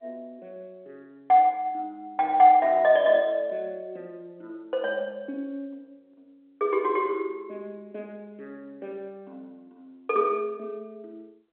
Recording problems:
telephone audio; 260 Hz to 3.4 kHz, G.711

